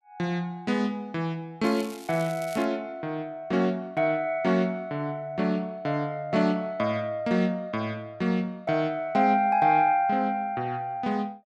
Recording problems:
crackle; from 1.5 to 2.5 s; loose cable, SNR 19 dB

